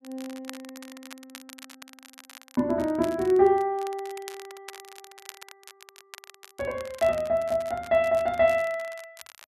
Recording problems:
crackling; vinyl, SNR 21 dB

